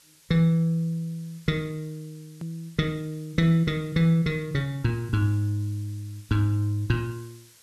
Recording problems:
background hiss; SNR 27 dB
hard cut with a click; at 2.5 s

